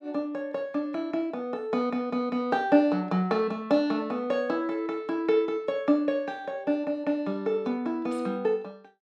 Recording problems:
none

